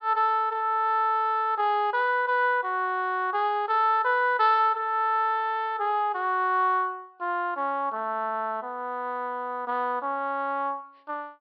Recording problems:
treble cut off; nothing above 5.5 kHz

